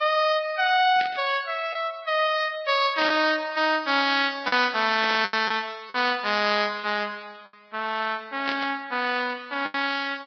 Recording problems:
lossy compression; Vorbis, log-spectral distance 5 dB, nothing above 5.3 kHz
lost packets; 3% of the sound replaced, filled with the last packet
burst of static; 4 times, first at 1 s; peak -3 dB vs average level

